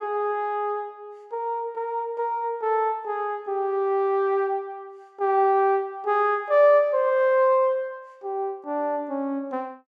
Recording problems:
none

